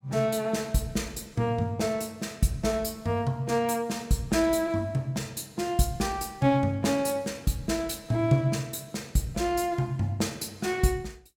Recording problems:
none

